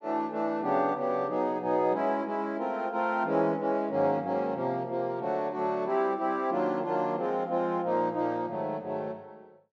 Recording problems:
none

